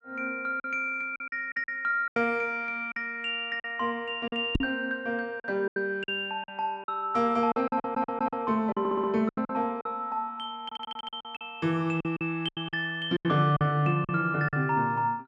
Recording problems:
packet loss; 11% of the sound replaced, filled with silence
knock on the microphone; at 4.5 s; peak +5 dB vs average level
audio stuttering; at 7.5 s, at 9 s and at 11 s

